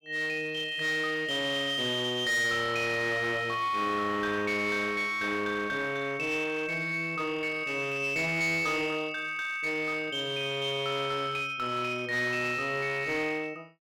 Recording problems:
distortion; hard clipping, uneven, signal-to-distortion ratio 10 dB

